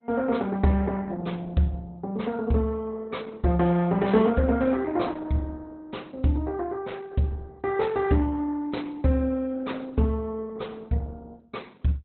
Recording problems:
lossy compression; Opus, log-spectral distance 3 dB, nothing above 4.1 kHz

